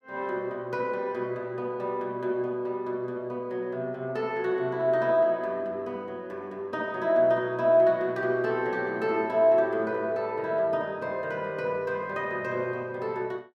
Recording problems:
none

